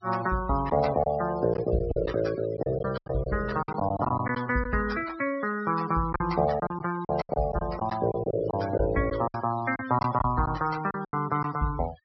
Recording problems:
treble cut off; nothing above 5.6 kHz
noise reduction artefacts; signal-to-artefact ratio 14 dB
lost packets; 9% of the sound replaced, filled with silence

